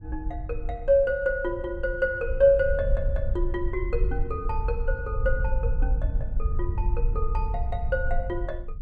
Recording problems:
rumble; below 60 Hz, SNR 3 dB

